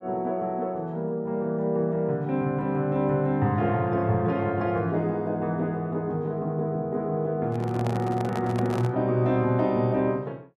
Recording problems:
handling noise; from 7.5 to 9 s; peak -5 dB vs average level

